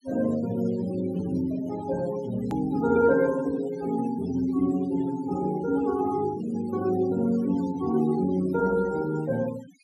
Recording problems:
denoising artefacts; signal-to-artefact ratio 18 dB
click at an edit; at 2.5 s

